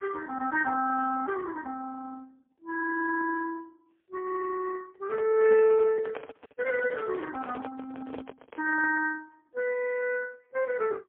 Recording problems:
telephone audio; 300 Hz to 2.6 kHz, AMR-NB, then MP3
microphone handling noise; from 5 to 9 s; peak -5 dB vs average level

